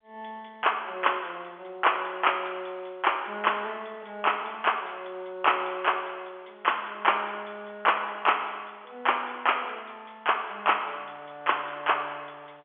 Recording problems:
telephone audio; 320 Hz to 3.3 kHz, G.711

